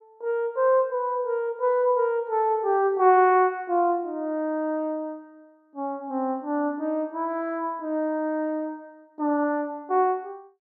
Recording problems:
none

